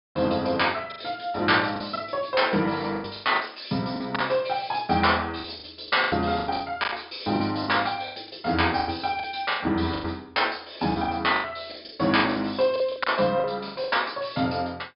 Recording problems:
treble cut off; nothing above 5.2 kHz
lost packets; 14% of the sound replaced, filled with the last packet

